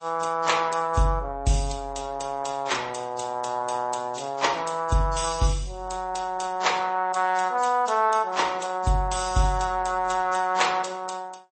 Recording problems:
lossy codec; MP3, then AAC, log-spectral distance 5 dB, nothing above 8.2 kHz

